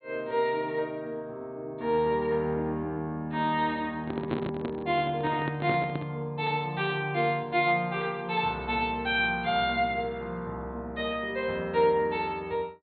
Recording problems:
treble cut off; nothing above 4.3 kHz
microphone handling noise; from 4 to 6 s; peak +2 dB vs average level

